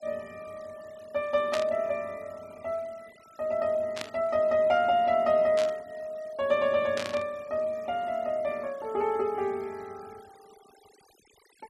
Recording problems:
noise reduction artefacts; signal-to-artefact ratio 27 dB
burst of static; 4 times, first at 1.5 s; peak -2 dB vs average level

